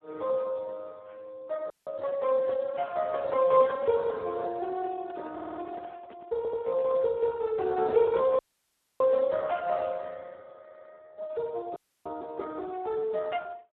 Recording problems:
telephone audio; 320 Hz to 2.8 kHz, Speex
dropout; at 1.5 s, at 8.5 s for 0.5 s and at 12 s
microphone handling noise; from 4.5 to 7 s; peak -17 dB vs average level
audio stuttering; at 5.5 s, at 6.5 s and at 11 s

